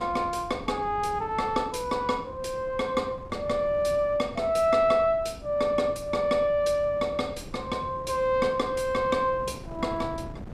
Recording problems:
wind on the microphone; below 320 Hz, SNR 17 dB

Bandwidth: 14.5 kHz